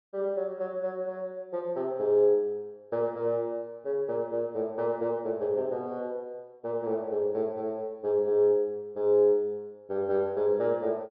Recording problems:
treble cut off; nothing above 5.5 kHz

